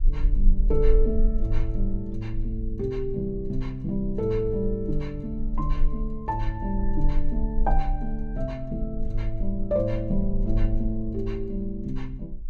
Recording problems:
low-frequency rumble; below 38 Hz, strongest tone 20 Hz, SNR 1 dB

